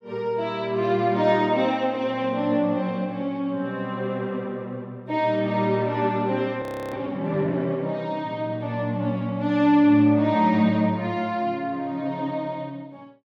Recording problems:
frozen audio; at 6.5 s

